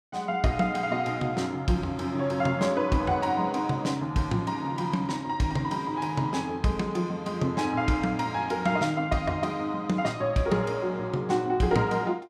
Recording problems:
none

